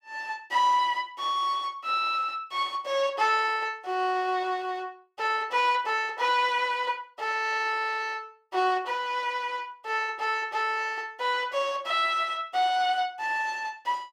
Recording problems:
none

